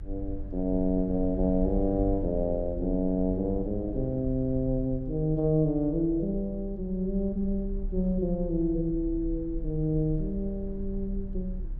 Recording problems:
low-frequency rumble; below 54 Hz, strongest tone 34 Hz, SNR 9 dB

